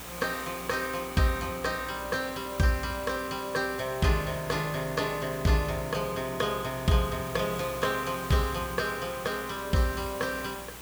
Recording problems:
hum; 60 Hz, harmonics up to 480 Hz, SNR 20 dB
hiss; slope -2 dB per octave, SNR 12 dB

